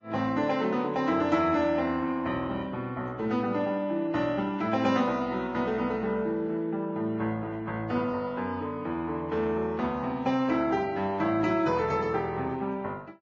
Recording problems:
lossy compression; Vorbis, log-spectral distance 2 dB, nothing above 7.1 kHz

